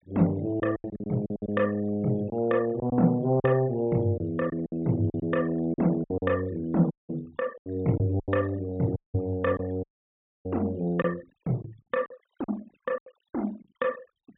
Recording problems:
treble missing; nothing above 3.8 kHz
noise reduction artefacts; signal-to-artefact ratio 24 dB
packet loss; 9% of the sound replaced, filled with silence
dropout; at 7 s, at 9 s and at 10 s for 0.5 s

